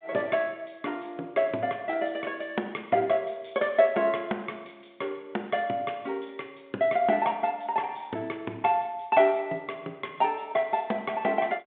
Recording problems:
telephone audio; 240 Hz to 3.5 kHz, G.726

